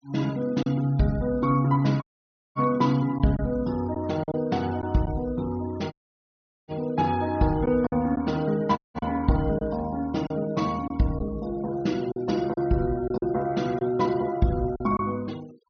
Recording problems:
low-pass filter; nothing above 6.4 kHz
noise reduction artefacts; signal-to-artefact ratio 24 dB
packet loss; 4% of the sound replaced, filled with silence
dropout; at 2 s for 0.5 s, at 6 s for 1 s and at 9 s

